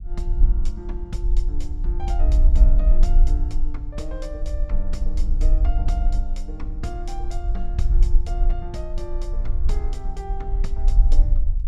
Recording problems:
rumble; below 44 Hz, strongest tone 22 Hz, SNR -12 dB

